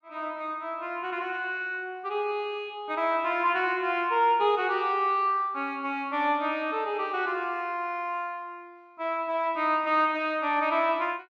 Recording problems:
none

